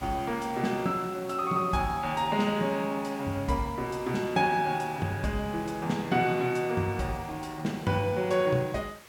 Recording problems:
background hiss; slope -2 dB per octave, SNR 20 dB

